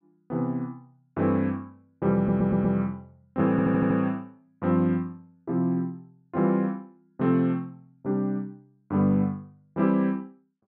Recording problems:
audio stuttering; at 2 s and at 3.5 s

